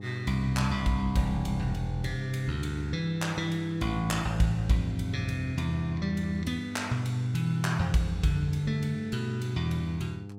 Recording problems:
hum; 50 Hz, harmonics up to 800 Hz, SNR 13 dB

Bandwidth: 16 kHz